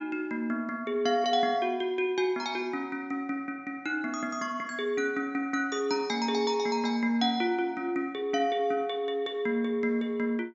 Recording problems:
treble missing; nothing above 8 kHz

